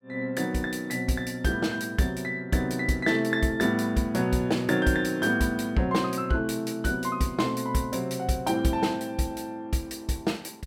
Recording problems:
none

